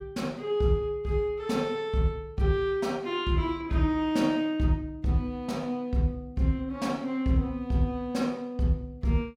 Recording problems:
none

